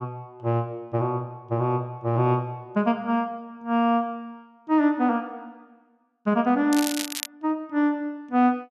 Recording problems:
crackle; at 6.5 s; loose cable, SNR 7 dB

